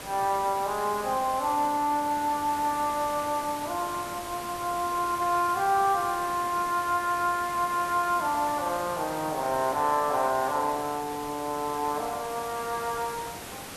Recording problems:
hiss; slope -3 dB per octave, SNR 11 dB

